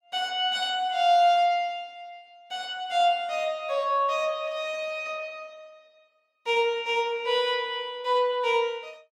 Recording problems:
none

